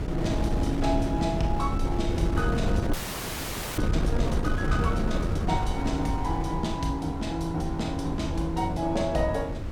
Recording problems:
wind on the microphone; below 200 Hz, SNR 1 dB
frozen audio; at 3 s for 1 s

